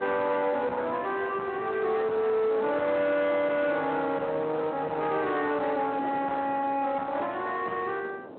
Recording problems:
phone line; 240 Hz to 3.6 kHz, Speex
distorted audio; soft clipping, signal-to-distortion ratio 10 dB
wind on the microphone; below 780 Hz, SNR 16 dB

